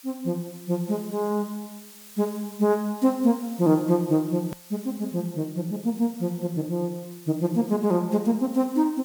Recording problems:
hiss; slope +3 dB per octave, SNR 20 dB
hard cut with a click; at 4.5 s

